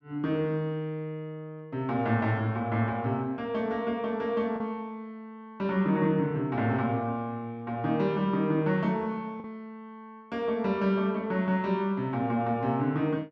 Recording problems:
lost packets; 0.6% of the sound replaced, filled with the last packet

